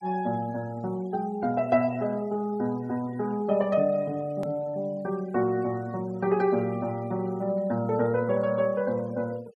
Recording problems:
noise reduction artefacts; signal-to-artefact ratio 25 dB
edit click; at 4.5 s

